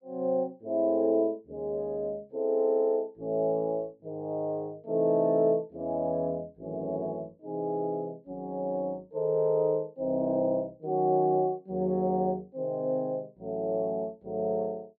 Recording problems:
none

